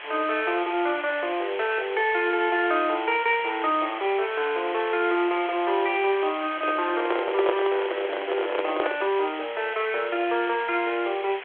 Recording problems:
telephone audio; 320 Hz to 3.5 kHz, G.726
hiss; SNR 11 dB
microphone handling noise; from 6.5 to 9 s; peak +4 dB vs average level

